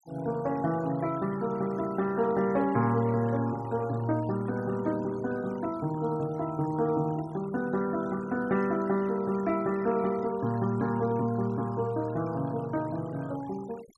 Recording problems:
noise reduction artefacts; signal-to-artefact ratio 21 dB

